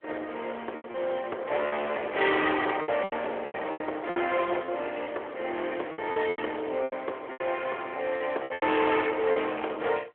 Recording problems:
phone line; 320 Hz to 3.4 kHz, AMR-NB
distortion; hard clipping, signal-to-distortion ratio 10 dB
packet loss; 11% of the sound replaced, filled with repeated pitch periods

